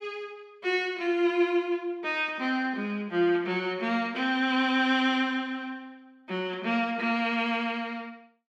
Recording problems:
none

